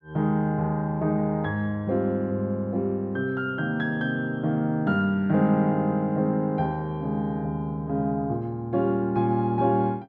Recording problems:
none

